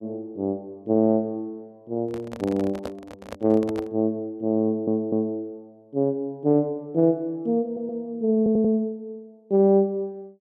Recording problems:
microphone handling noise; from 2 to 4 s; peak -5 dB vs average level
audio stuttering; at 4.5 s, at 7.5 s and at 8.5 s

